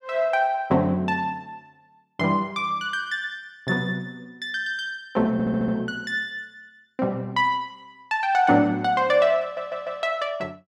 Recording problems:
audio stuttering; at 5.5 s and at 9.5 s

